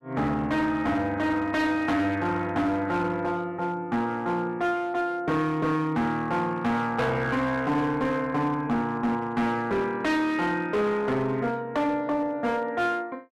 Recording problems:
distorted audio; hard clipping, uneven, signal-to-distortion ratio 11 dB

